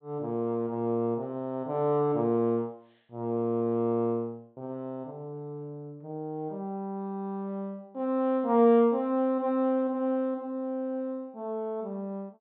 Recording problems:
treble cut off; nothing above 4 kHz

